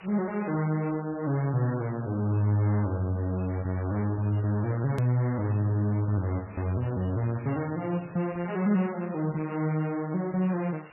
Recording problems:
lossy compression; MP3, log-spectral distance 13 dB, nothing above 13.1 kHz
hiss; SNR 22 dB
click at an edit; at 5 s

